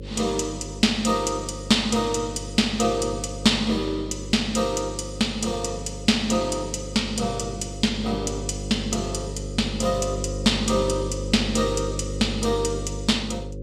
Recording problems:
electrical hum; 50 Hz, harmonics up to 550 Hz, SNR 9 dB

